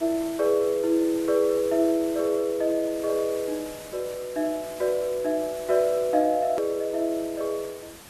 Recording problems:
hiss; slope -2 dB per octave, SNR 17 dB
hard cut with a click; at 6.5 s

